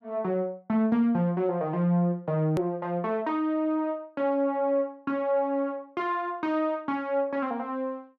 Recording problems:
hard cut with a click; at 2.5 s

